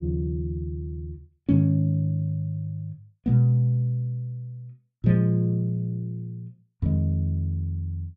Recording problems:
none

